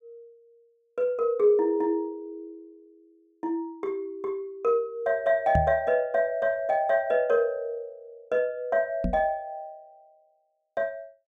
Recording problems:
microphone bump; at 5.5 s and at 9 s; peak +3 dB vs average level

